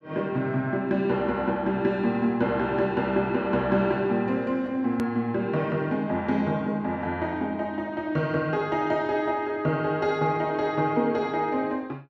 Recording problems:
click at an edit; at 5 s

